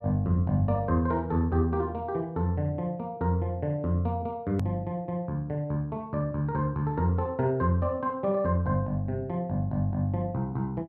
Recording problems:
hard cut with a click; at 4.5 s

